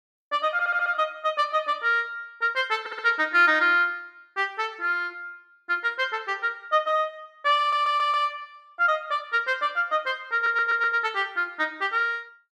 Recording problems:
audio stuttering; 4 times, first at 0.5 s

